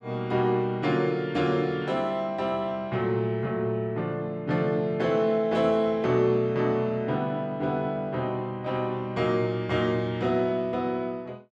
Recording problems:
none

